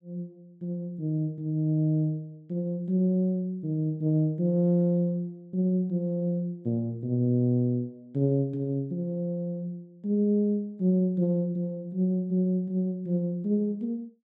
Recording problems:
none

